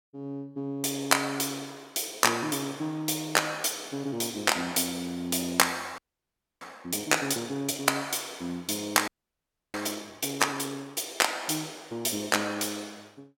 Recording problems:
audio freezing; at 6 s for 0.5 s and at 9 s for 0.5 s

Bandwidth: 17.5 kHz